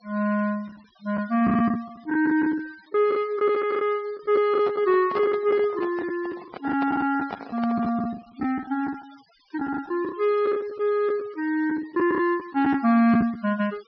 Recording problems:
treble missing; nothing above 5.5 kHz
denoising artefacts; signal-to-artefact ratio 26 dB
packet loss; 9% of the sound replaced, filled with the last packet
microphone handling noise; from 4.5 to 8 s; peak -5 dB vs average level

